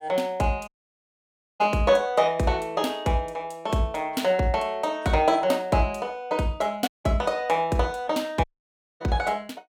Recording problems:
dropout; at 0.5 s for 1 s, at 7 s and at 8.5 s for 0.5 s

